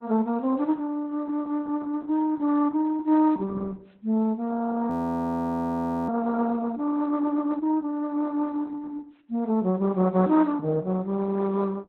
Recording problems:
codec artefacts; Opus, log-spectral distance 2 dB, nothing above 18.9 kHz
frozen audio; at 5 s for 1 s

